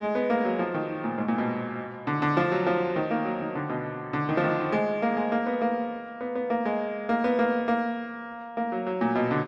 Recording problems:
none

